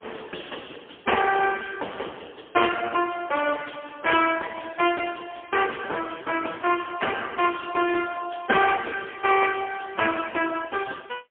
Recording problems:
phone line; 280 Hz to 3.3 kHz, AMR-NB, then MP3

